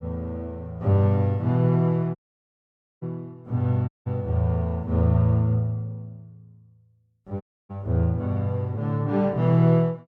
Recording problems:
dropout; at 2 s for 1 s, at 4 s and at 7.5 s

